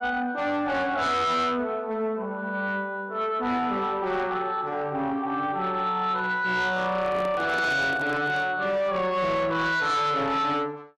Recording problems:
distorted audio; soft clipping, signal-to-distortion ratio 10 dB
handling noise; from 7 to 8.5 s; peak -4 dB vs average level

